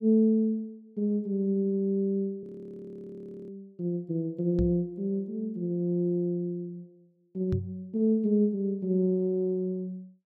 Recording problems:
audio freezing; at 2.5 s for 1 s
microphone bump; at 4.5 s and at 7.5 s; peak +2 dB vs average level

